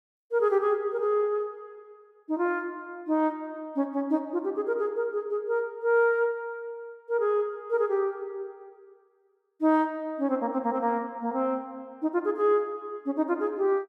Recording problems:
none

